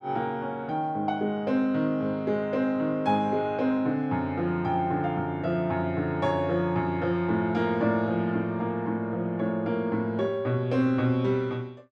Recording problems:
none

